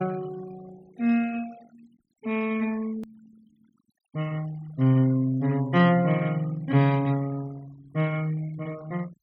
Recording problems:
denoising artefacts; signal-to-artefact ratio 23 dB
hard cut with a click; at 3 s

